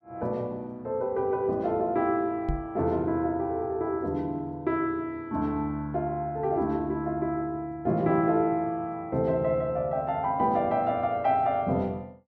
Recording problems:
knock on the microphone; at 2.5 s; peak +1 dB vs average level

